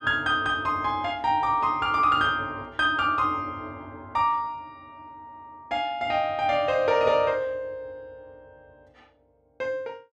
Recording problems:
none

